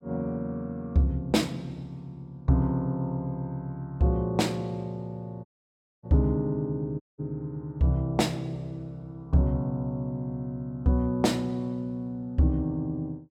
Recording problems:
audio cutting out; at 5.5 s for 0.5 s and at 7 s

